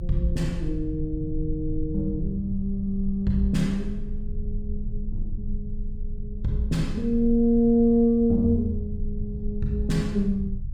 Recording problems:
rumble; below 66 Hz, strongest tone 24 Hz, SNR 10 dB

